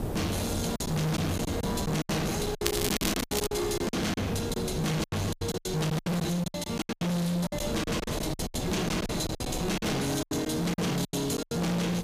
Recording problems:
distorted audio; hard clipping, signal-to-distortion ratio 6 dB
background hiss; slope +1 dB per octave, SNR 20 dB
wind noise; below 510 Hz, SNR 6 dB
lost packets; 16% of the sound replaced, filled with silence
crackle; at 2.5 s; loose cable, SNR 3 dB

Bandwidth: 15 kHz